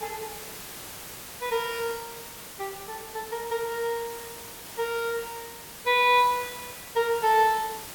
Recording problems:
background hiss; slope -2 dB per octave, SNR 13 dB

